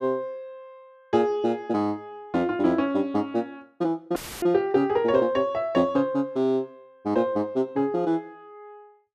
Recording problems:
audio cutting out; at 4 s; filled with static

